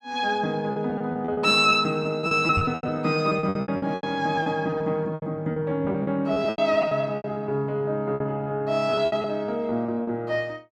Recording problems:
packet loss; 16% of the sound replaced, filled with repeated pitch periods
microphone thump; at 2.5 s; peak +2 dB vs average level

